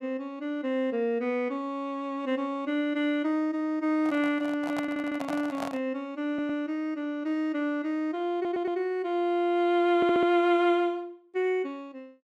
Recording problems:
microphone handling noise; from 4 to 6 s; peak -3 dB vs average level
audio stuttering; 4 times, first at 5 s

